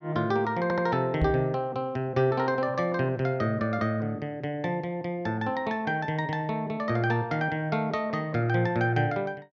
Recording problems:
audio stuttering; at 0.5 s
microphone thump; at 1 s; peak +4 dB vs average level

